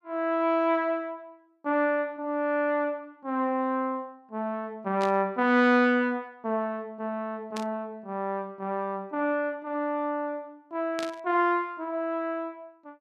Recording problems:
static burst; at 5 s, at 7.5 s and at 11 s; peak -5 dB vs average level

